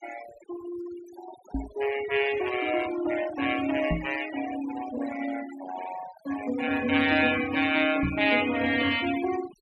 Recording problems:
noise reduction artefacts; signal-to-artefact ratio 11 dB
knock on the microphone; at 1.5 s, at 4 s and at 8 s; peak +1 dB vs average level

